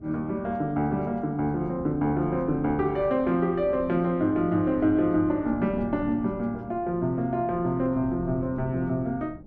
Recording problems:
wind noise; below 260 Hz, SNR 18 dB

